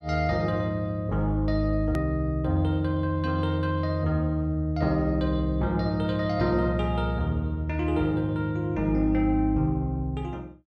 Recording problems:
hard cut with a click; at 2 s

